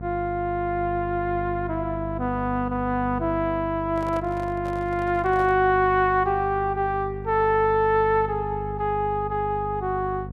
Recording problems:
electrical hum; 50 Hz, harmonics up to 700 Hz, SNR 11 dB
handling noise; from 4 to 5.5 s; peak -11 dB vs average level

